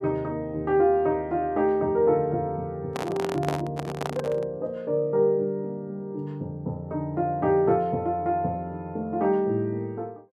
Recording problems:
microphone handling noise; from 3 to 4.5 s; peak 0 dB vs average level

